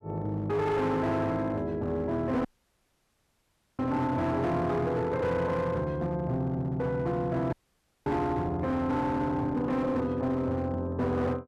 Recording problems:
distorted audio; hard clipping, signal-to-distortion ratio 11 dB
audio cutting out; at 2.5 s for 1.5 s and at 7.5 s for 0.5 s

